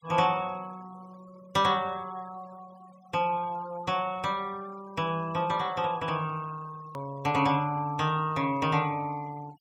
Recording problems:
noise reduction artefacts; signal-to-artefact ratio 22 dB
edit click; at 7 s

